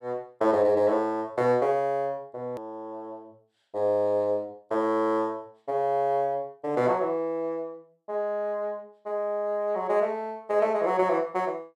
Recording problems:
click at an edit; at 2.5 s

